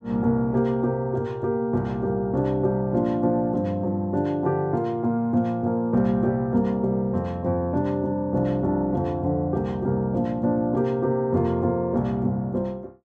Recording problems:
none

